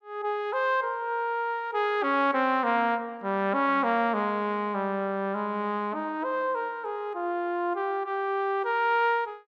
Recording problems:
none

